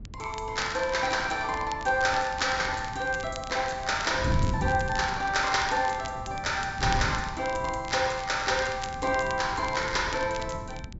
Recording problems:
treble missing; nothing above 8 kHz
wind on the microphone; below 170 Hz, SNR 10 dB
crackle; vinyl, SNR 17 dB

